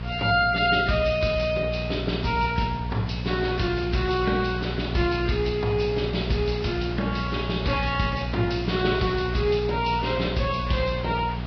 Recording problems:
lossy compression; Vorbis, log-spectral distance 5 dB, nothing above 5.2 kHz
electrical hum; 60 Hz, harmonics up to 720 Hz, SNR 7 dB
background hiss; SNR 16 dB

